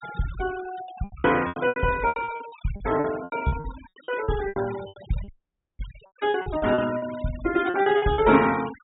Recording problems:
treble cut off; nothing above 4 kHz
denoising artefacts; signal-to-artefact ratio 15 dB
packet loss; 18% of the sound replaced, filled with repeated pitch periods
dropout; at 5.5 s for 0.5 s

